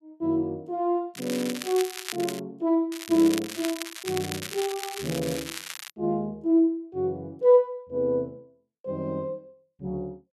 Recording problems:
crackling; from 1 to 2.5 s, at 3 s and from 3.5 to 6 s; loose cable, SNR 9 dB

